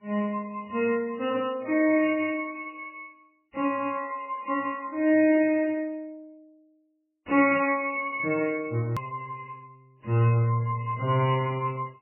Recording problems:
lossy codec; MP3, then MP3, log-spectral distance 4 dB, nothing above 2.9 kHz
click at an edit; at 9 s

